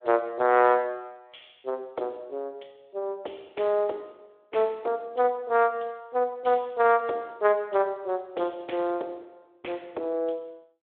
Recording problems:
telephone audio; 300 Hz to 3.6 kHz, Speex

